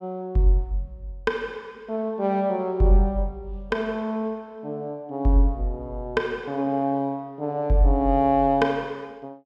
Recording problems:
none

